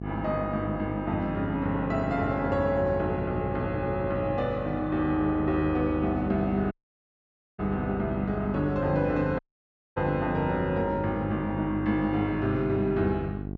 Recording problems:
treble missing; nothing above 8 kHz
hum; 50 Hz, harmonics up to 800 Hz, SNR 8 dB
dropout; at 6.5 s for 1 s and at 9.5 s for 0.5 s

